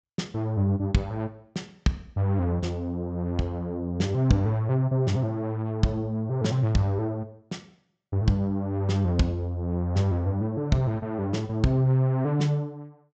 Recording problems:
treble cut off; nothing above 8 kHz

